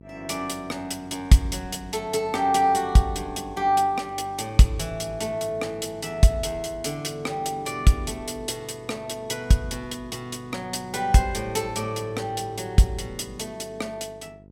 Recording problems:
electrical hum; 50 Hz, harmonics up to 600 Hz, SNR 23 dB

